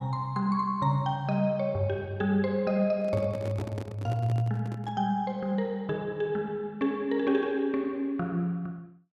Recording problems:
microphone handling noise; from 3 to 5 s; peak -4 dB vs average level

